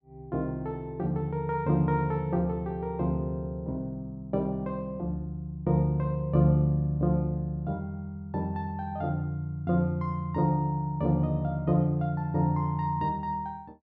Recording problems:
none

